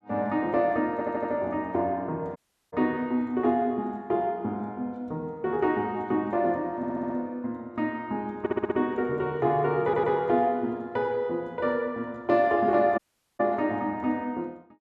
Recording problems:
stutter; 4 times, first at 1 s
audio cutting out; at 2.5 s and at 13 s

